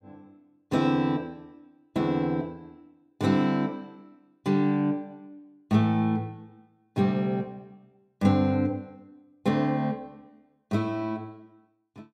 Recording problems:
none

